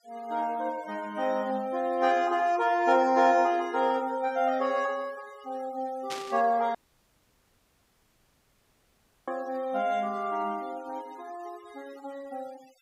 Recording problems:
noise reduction artefacts; signal-to-artefact ratio 23 dB
burst of static; at 6 s; peak -5 dB vs average level
dropout; at 7 s for 2.5 s

